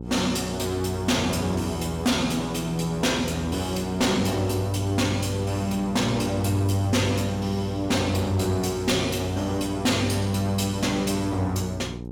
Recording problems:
distorted audio; soft clipping, signal-to-distortion ratio 11 dB
electrical hum; 60 Hz, harmonics up to 900 Hz, SNR 11 dB

